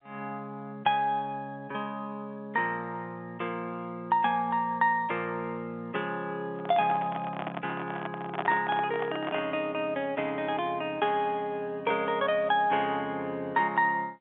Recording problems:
telephone audio; 300 Hz to 3.6 kHz, G.711
handling noise; from 6.5 to 9.5 s; peak +2 dB vs average level

